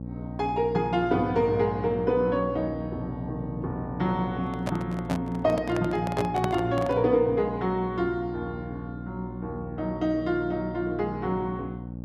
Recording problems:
hum; 60 Hz, harmonics up to 780 Hz, SNR 9 dB
microphone handling noise; from 4.5 to 7 s; peak +2 dB vs average level

